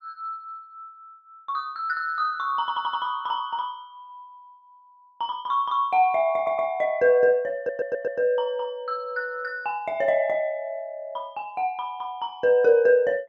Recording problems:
stutter; at 2.5 s, at 6.5 s and at 7.5 s

